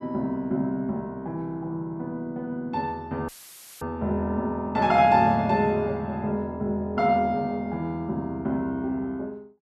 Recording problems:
audio cutting out; at 3.5 s for 0.5 s; filled with static

